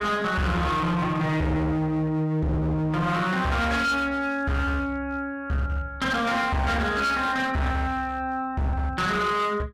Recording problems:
distortion; hard clipping, uneven, signal-to-distortion ratio 8 dB

